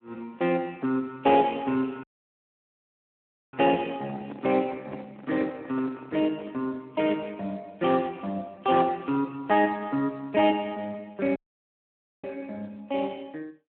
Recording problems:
phone line; 220 Hz to 3.1 kHz, Speex
audio cutting out; at 2 s for 1.5 s and at 11 s for 1 s
microphone handling noise; from 4 to 6.5 s; peak -9 dB vs average level

